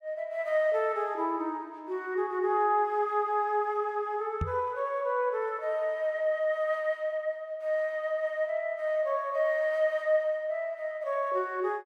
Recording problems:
microphone thump; at 4.5 s; peak +1 dB vs average level

